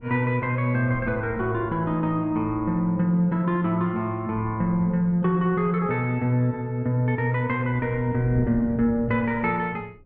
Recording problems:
wind noise; below 210 Hz, SNR 17 dB

